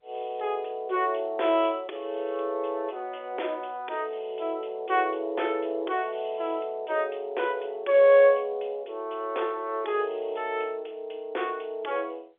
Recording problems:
telephone audio; 280 Hz to 3.5 kHz, G.711

